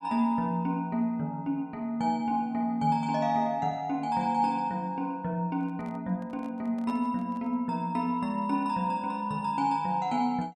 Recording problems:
microphone handling noise; from 5.5 to 7.5 s; peak -11 dB vs average level

